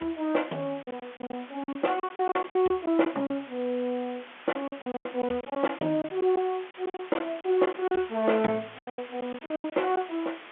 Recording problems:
phone line; 240 Hz to 3.5 kHz, G.711
hiss; SNR 17 dB
lost packets; 13% of the sound replaced, filled with silence

